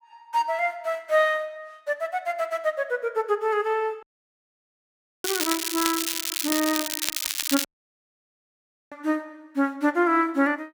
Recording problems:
dropout; at 4 s for 1 s and at 7.5 s for 1.5 s
crackling; from 5 to 7.5 s; loose cable, SNR 1 dB

